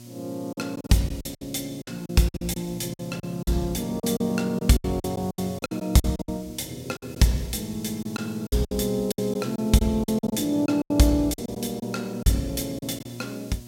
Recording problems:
hum; 60 Hz, harmonics up to 960 Hz, SNR 16 dB
background hiss; slope +6 dB per octave, SNR 22 dB
lost packets; 13% of the sound replaced, filled with silence

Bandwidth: 16 kHz